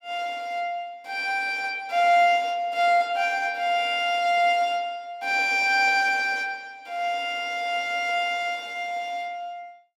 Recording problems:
none

